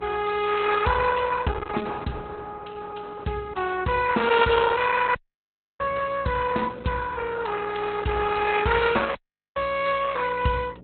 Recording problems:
codec artefacts; Opus, log-spectral distance 5 dB, nothing above 3.9 kHz
hum; 60 Hz, harmonics up to 540 Hz, SNR 23 dB
dropout; at 5 s for 0.5 s and at 9 s

